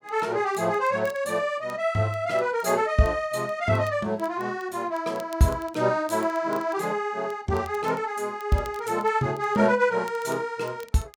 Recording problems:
crackle; vinyl, SNR 27 dB

